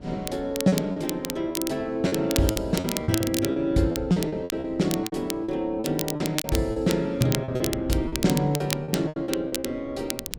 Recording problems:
wind on the microphone; below 280 Hz, SNR 19 dB
crackle; vinyl, SNR 8 dB
packet loss; 13% of the sound replaced, filled with repeated pitch periods

